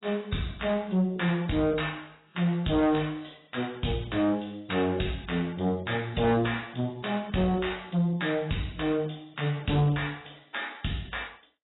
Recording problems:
lossy compression; AAC, log-spectral distance 8 dB, nothing above 3.8 kHz
distortion; soft clipping, signal-to-distortion ratio 11 dB

